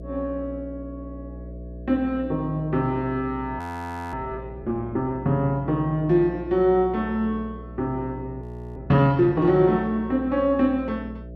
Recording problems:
hum; 60 Hz, harmonics up to 660 Hz, SNR 15 dB
frozen audio; at 3.5 s for 0.5 s and at 8.5 s

